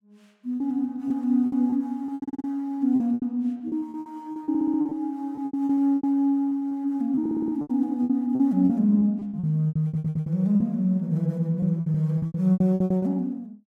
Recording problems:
lost packets; 17% of the sound replaced, filled with repeated pitch periods
audio stuttering; 4 times, first at 2 s

